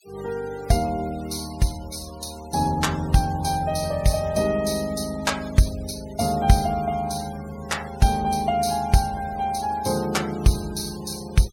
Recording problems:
noise reduction artefacts; signal-to-artefact ratio 18 dB

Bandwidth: 16.5 kHz